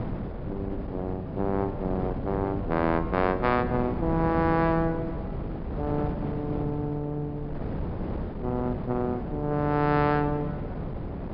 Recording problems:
low-pass filter; nothing above 5.5 kHz
wind noise; below 380 Hz, SNR 6 dB

